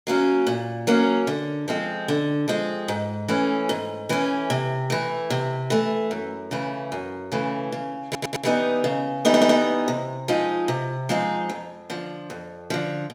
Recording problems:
audio stuttering; at 8 s and at 9.5 s

